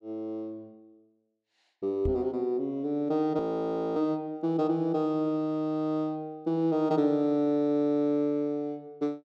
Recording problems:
microphone bump; at 2 s; peak -1 dB vs average level
frozen audio; at 3.5 s for 0.5 s

